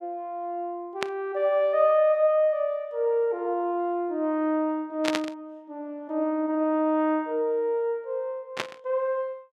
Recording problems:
static burst; at 1 s, at 5 s and at 8.5 s; peak +3 dB vs average level

